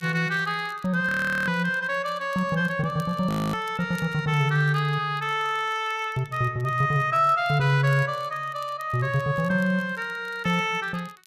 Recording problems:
crackling; vinyl, SNR 28 dB
frozen audio; at 1 s and at 3.5 s

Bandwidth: 14.5 kHz